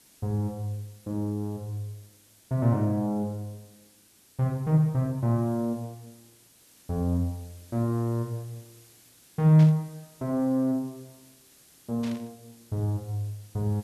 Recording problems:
background hiss; SNR 27 dB
burst of static; at 9.5 s and at 12 s; peak -11 dB vs average level

